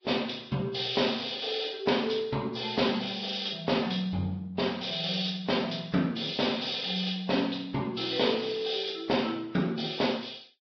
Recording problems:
lossy compression; Vorbis, log-spectral distance 7 dB, nothing above 5 kHz

